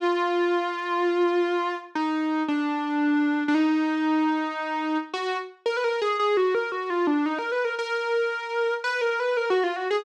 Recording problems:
none

